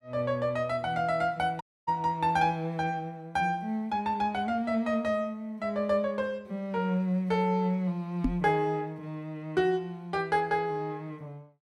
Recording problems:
dropout; at 1.5 s
microphone thump; at 8 s; peak +6 dB vs average level

